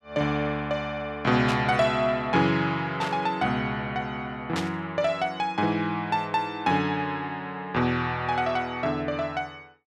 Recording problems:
static burst; at 1.5 s, at 3 s and at 4.5 s; peak -2 dB vs average level

